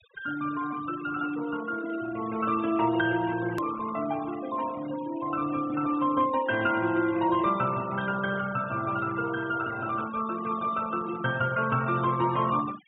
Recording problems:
low-pass filter; nothing above 4 kHz
denoising artefacts; signal-to-artefact ratio 15 dB
hard cut with a click; at 3.5 s

